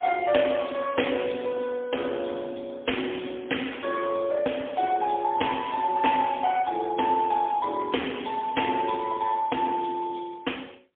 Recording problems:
telephone audio; 280 Hz to 3.4 kHz, AMR-NB, then MP3

